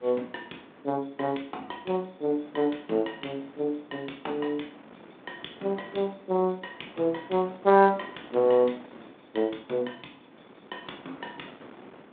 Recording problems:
phone line; 220 Hz to 3.6 kHz, G.726
wind noise; below 1.1 kHz, SNR 22 dB

